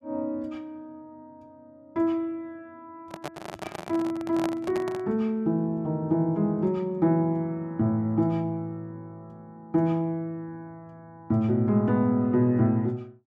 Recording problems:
microphone handling noise; from 3 to 5 s; peak -1 dB vs average level

